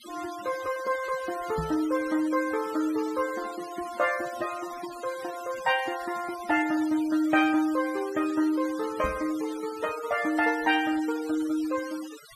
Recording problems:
noise reduction artefacts; signal-to-artefact ratio 15 dB
microphone thump; at 1.5 s and at 9 s; peak -2 dB vs average level

